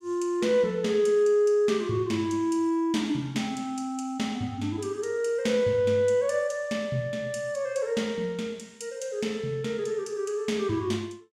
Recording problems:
none

